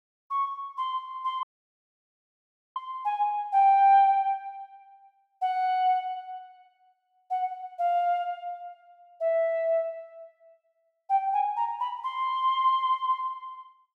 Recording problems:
dropout; at 1.5 s for 1.5 s

